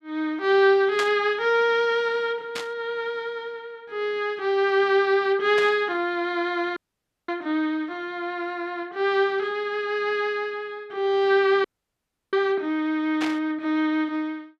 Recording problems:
burst of static; 4 times, first at 1 s; peak -2 dB vs average level
dropout; at 7 s for 0.5 s and at 12 s for 0.5 s

